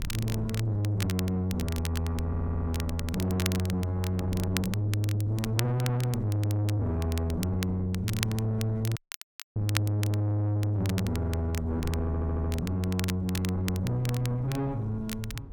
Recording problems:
distortion; soft clipping, signal-to-distortion ratio 7 dB
wind noise; below 190 Hz, SNR 13 dB
crackle; vinyl, SNR 11 dB
audio stuttering; at 2.5 s and at 12 s
dropout; at 9 s for 0.5 s

